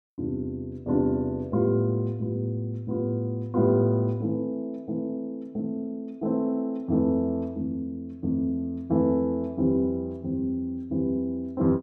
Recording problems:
none

